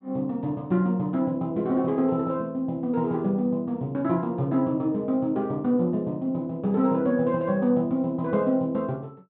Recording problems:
treble cut off; nothing above 4 kHz

